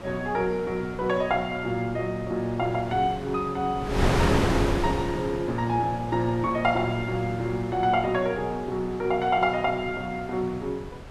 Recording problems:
wind on the microphone; below 850 Hz, SNR 7 dB

